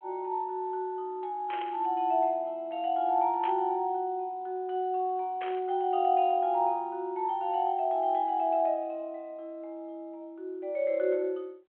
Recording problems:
telephone audio; 340 Hz to 3.3 kHz, G.726
burst of static; at 1.5 s, at 3.5 s and at 5.5 s; peak -8 dB vs average level

